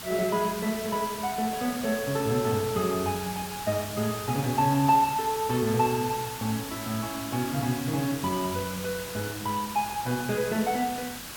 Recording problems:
hiss; slope -1 dB per octave, SNR 9 dB

